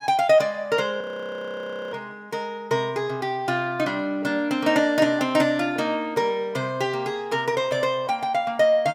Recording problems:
frozen audio; at 1 s for 1 s

